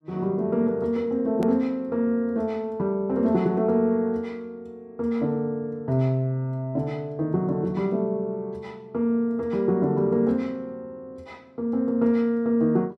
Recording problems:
click at an edit; at 1.5 s

